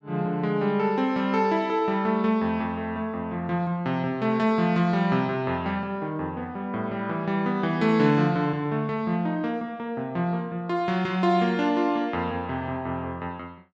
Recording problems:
none

